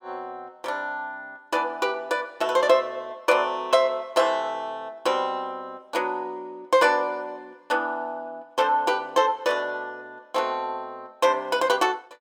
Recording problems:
none

